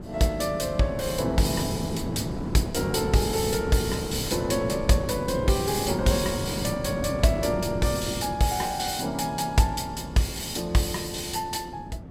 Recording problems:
wind on the microphone; below 330 Hz, SNR 7 dB

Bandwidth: 16 kHz